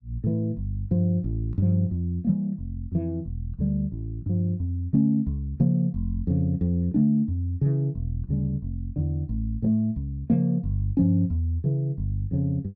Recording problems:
none

